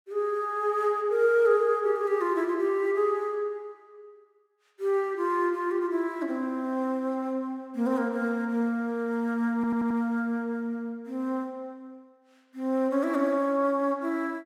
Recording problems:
stutter; at 9.5 s

